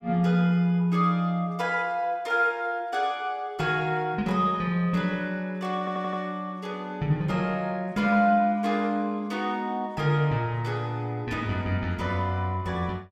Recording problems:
stutter; at 6 s

